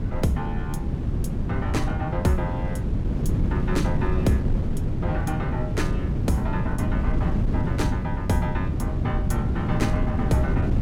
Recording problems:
wind noise; below 180 Hz, SNR -3 dB

